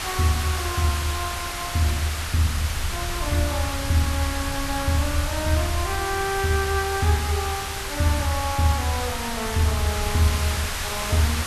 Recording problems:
background hiss; SNR 4 dB
wind noise; below 94 Hz, SNR 11 dB

